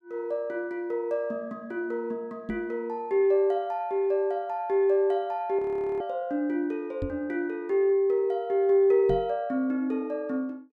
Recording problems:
microphone bump; at 2.5 s, at 7 s and at 9 s; peak -2 dB vs average level
audio freezing; at 5.5 s

